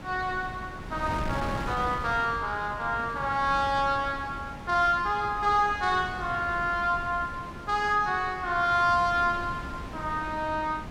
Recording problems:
wind on the microphone; below 660 Hz, SNR 12 dB

